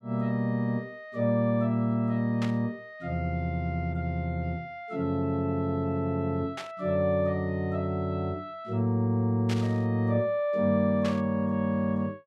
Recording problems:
static burst; 4 times, first at 2.5 s; peak -5 dB vs average level

